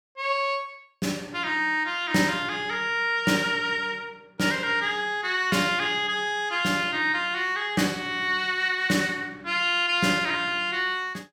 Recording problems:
none

